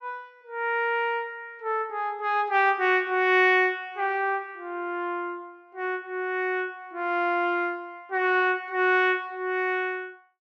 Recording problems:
none

